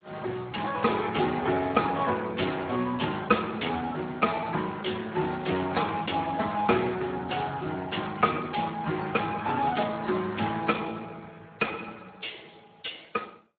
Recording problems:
lossy codec; AAC, then Speex, log-spectral distance 9 dB, nothing above 3.8 kHz

